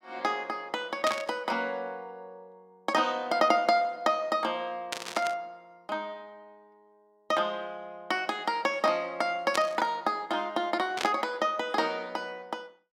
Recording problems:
burst of static; 4 times, first at 1 s; peak +2 dB vs average level

